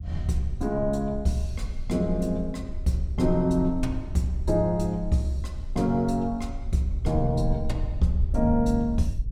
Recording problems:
rumble; below 64 Hz, SNR 8 dB

